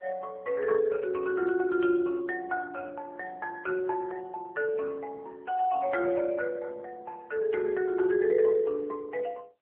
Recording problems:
telephone audio; 300 Hz to 2.6 kHz, AMR-NB

